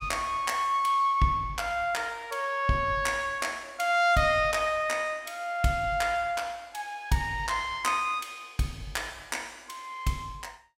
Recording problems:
none

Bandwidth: 16.5 kHz